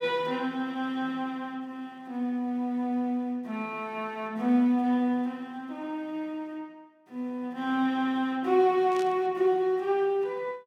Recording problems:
burst of static; at 9 s; peak -11 dB vs average level

